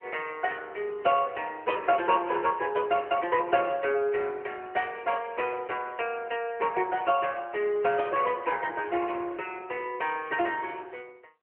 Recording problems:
telephone audio; 300 Hz to 3.1 kHz, AMR-NB

